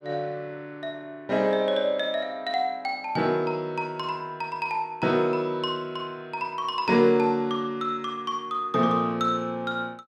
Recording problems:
none

